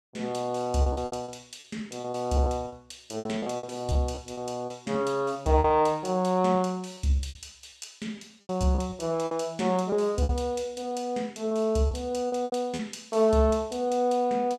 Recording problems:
lost packets; 12% of the sound replaced, filled with repeated pitch periods

